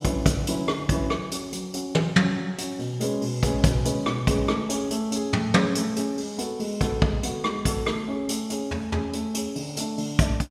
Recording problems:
none

